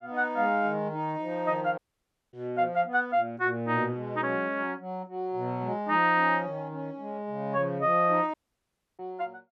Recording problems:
dropout; at 2 s for 0.5 s and at 8.5 s for 0.5 s

